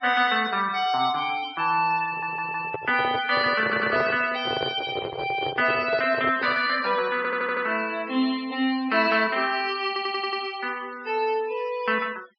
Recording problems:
treble missing; nothing above 5.5 kHz
noise reduction artefacts; signal-to-artefact ratio 20 dB
microphone handling noise; from 2 to 6.5 s; peak -1 dB vs average level
stutter; 4 times, first at 2 s

